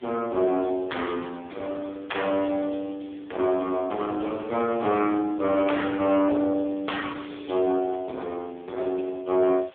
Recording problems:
phone line; 260 Hz to 3.4 kHz, AMR-NB
distortion; soft clipping, signal-to-distortion ratio 12 dB
hiss; SNR 28 dB

